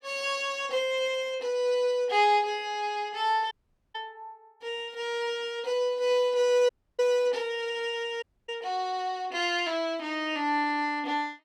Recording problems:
audio cutting out; at 3.5 s, at 6.5 s and at 8 s

